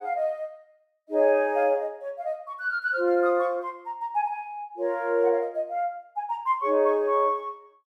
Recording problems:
none

